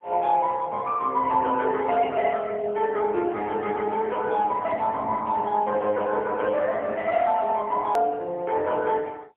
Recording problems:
phone line; 300 Hz to 3.4 kHz, AMR-NB, then MP3
edit click; at 8 s

